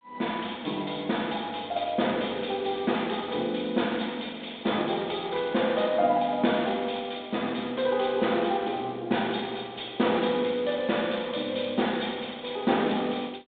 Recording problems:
phone line; 190 Hz to 3.7 kHz, G.726

